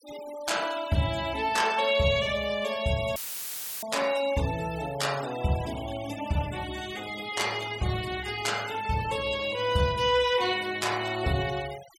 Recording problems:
denoising artefacts; signal-to-artefact ratio 16 dB
audio cutting out; at 3 s for 0.5 s; filled with static

